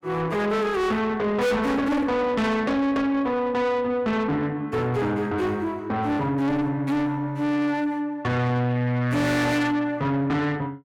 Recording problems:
distorted audio; soft clipping, signal-to-distortion ratio 7 dB

